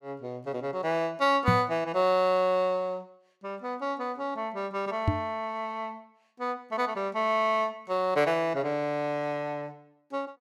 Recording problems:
microphone bump; at 1.5 s and at 5 s; peak +7 dB vs average level

